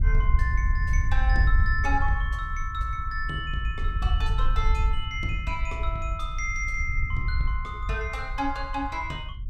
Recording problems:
wind on the microphone; below 66 Hz, SNR -1 dB

